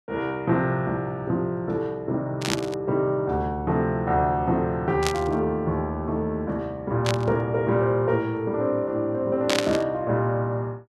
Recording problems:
burst of static; 4 times, first at 2.5 s; peak +5 dB vs average level

